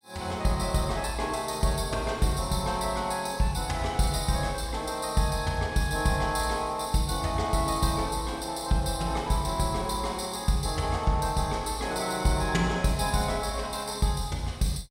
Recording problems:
none

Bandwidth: 16 kHz